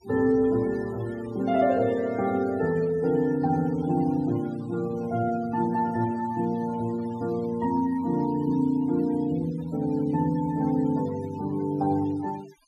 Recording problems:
denoising artefacts; signal-to-artefact ratio 21 dB

